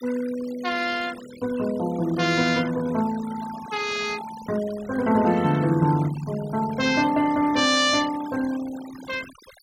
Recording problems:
denoising artefacts; signal-to-artefact ratio 17 dB

